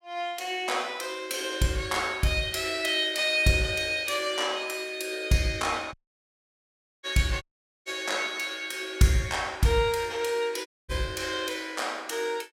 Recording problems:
dropout; at 6 s for 1 s, at 7.5 s and at 11 s

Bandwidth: 16.5 kHz